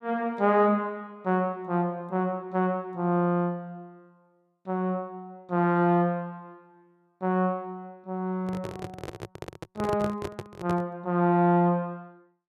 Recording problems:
handling noise; from 8.5 to 11 s; peak -3 dB vs average level

